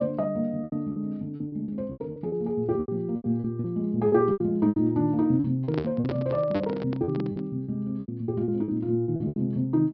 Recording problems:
treble cut off; nothing above 5.5 kHz
lost packets; 15% of the sound replaced, filled with repeated pitch periods
microphone handling noise; from 5.5 to 7.5 s; peak +1 dB vs average level

